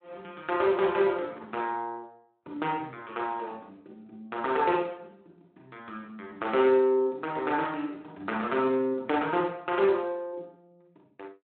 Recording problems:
telephone audio; 280 Hz to 3.6 kHz, Speex

